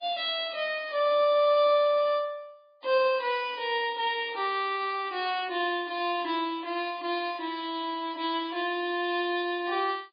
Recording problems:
codec artefacts; AAC, then MP3, log-spectral distance 2 dB, nothing above 4.2 kHz

